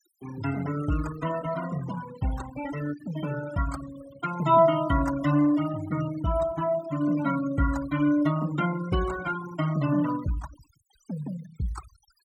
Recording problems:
denoising artefacts; signal-to-artefact ratio 14 dB

